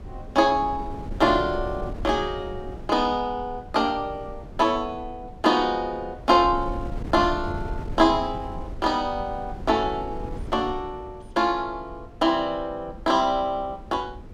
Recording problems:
wind noise; below 200 Hz, SNR 14 dB

